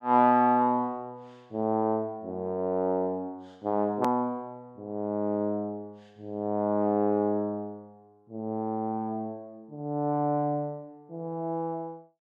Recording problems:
edit click; at 4 s

